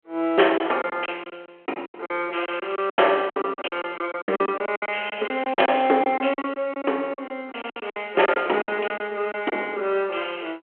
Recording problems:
phone line; 280 Hz to 3.3 kHz, G.726
lost packets; 15% of the sound replaced, filled with silence

